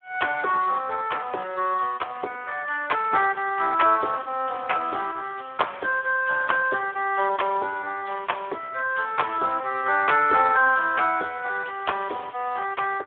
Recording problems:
telephone audio; 300 Hz to 2.8 kHz, Speex

